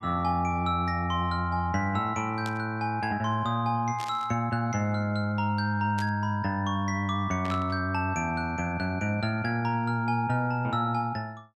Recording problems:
burst of static; 4 times, first at 2.5 s; peak -6 dB vs average level

